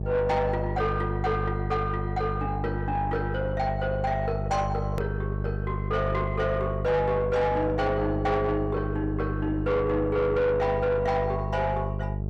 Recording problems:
distortion; soft clipping, signal-to-distortion ratio 11 dB
hum; 50 Hz, harmonics up to 650 Hz, SNR 4 dB
edit click; at 5 s

